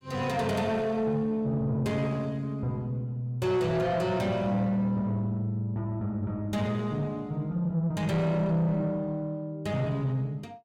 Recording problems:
distorted audio; soft clipping, signal-to-distortion ratio 11 dB

